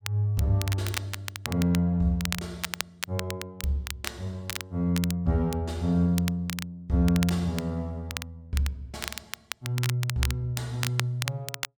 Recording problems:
crackling; vinyl, SNR 8 dB

